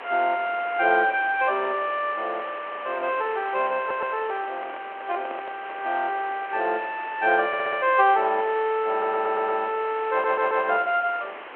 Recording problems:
phone line; 300 Hz to 3.5 kHz, G.726
hiss; SNR 14 dB
stutter; 4 times, first at 4 s
microphone handling noise; from 4 to 6 s; peak -11 dB vs average level

